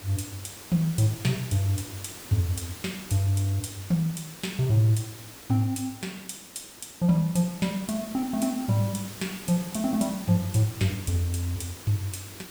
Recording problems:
hiss; SNR 14 dB

